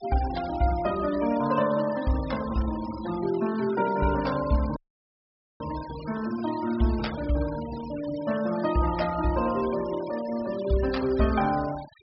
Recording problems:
treble missing; nothing above 5.5 kHz
noise reduction artefacts; signal-to-artefact ratio 16 dB
dropout; at 5 s for 1 s

